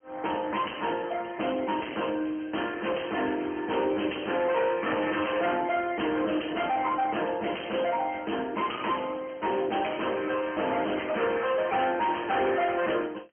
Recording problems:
telephone audio; 240 Hz to 3.2 kHz, AMR-NB
distorted audio; hard clipping, uneven, signal-to-distortion ratio 7 dB

